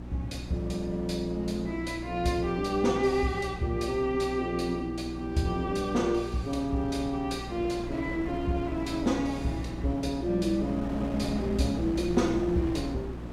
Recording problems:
hum; 60 Hz, harmonics up to 360 Hz, SNR 10 dB
wind noise; below 580 Hz, SNR 13 dB

